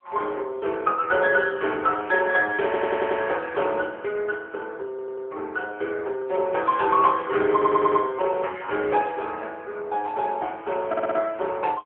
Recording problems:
telephone audio; 340 Hz to 2.6 kHz, AMR-NB
stutter; 4 times, first at 2.5 s

